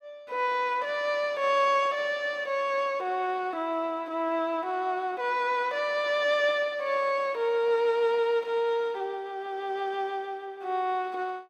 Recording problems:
none

